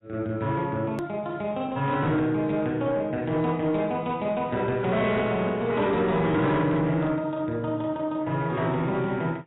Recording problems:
lossy codec; AAC, log-spectral distance 2 dB, nothing above 3.2 kHz
distortion; soft clipping, signal-to-distortion ratio 12 dB
click at an edit; at 1 s

